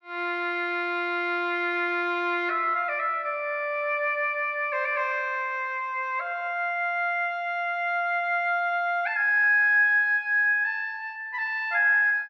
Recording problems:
none

